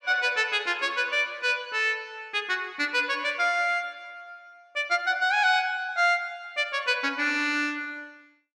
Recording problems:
none

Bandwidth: 14 kHz